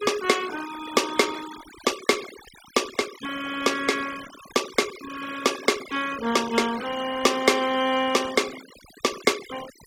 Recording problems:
noise reduction artefacts; signal-to-artefact ratio 13 dB

